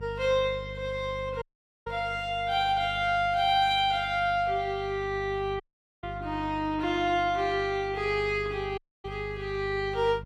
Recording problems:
hum; 50 Hz, harmonics up to 400 Hz, SNR 15 dB
audio cutting out; at 1.5 s, at 5.5 s and at 9 s

